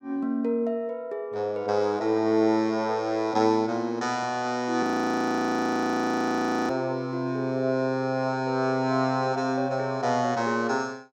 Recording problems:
audio freezing; at 5 s for 2 s

